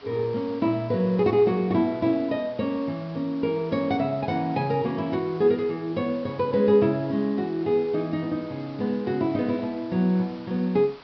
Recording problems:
treble cut off; nothing above 5.5 kHz
hiss; SNR 23 dB

